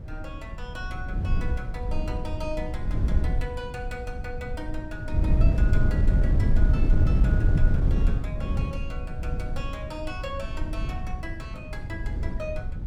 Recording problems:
wind on the microphone; below 96 Hz, SNR -10 dB

